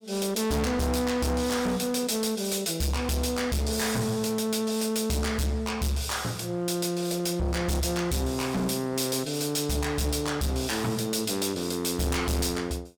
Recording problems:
distorted audio; hard clipping, signal-to-distortion ratio 7 dB

